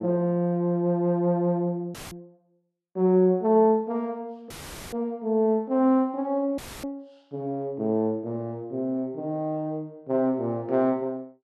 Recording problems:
audio cutting out; at 2 s, at 4.5 s and at 6.5 s; filled with static

